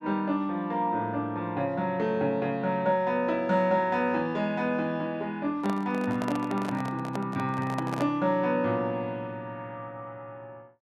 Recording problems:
handling noise; from 5.5 to 8 s; peak -3 dB vs average level

